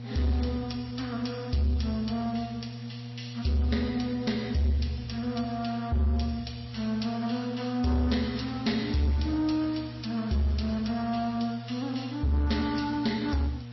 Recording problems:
lossy codec; MP3, log-spectral distance 4 dB, nothing above 5.7 kHz
distorted audio; soft clipping, signal-to-distortion ratio 12 dB
hum; 60 Hz, harmonics up to 720 Hz, SNR 11 dB
hiss; slope 0 dB per octave, SNR 26 dB

